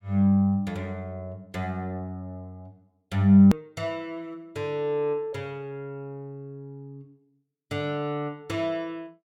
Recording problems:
click at an edit; at 3.5 s

